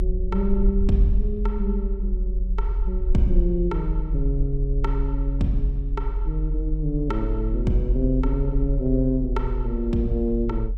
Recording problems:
low-frequency rumble; below 44 Hz, strongest tone 42 Hz, SNR 0 dB

